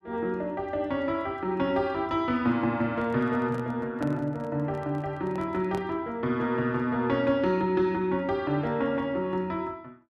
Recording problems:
microphone handling noise; from 3 to 6 s; peak -6 dB vs average level

